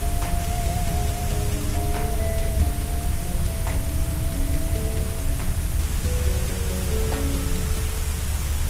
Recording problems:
codec artefacts; Vorbis, then Opus, log-spectral distance 8 dB, nothing above 15.5 kHz
background hiss; slope -2 dB per octave, SNR 0 dB
rumble; below 94 Hz, SNR -5 dB

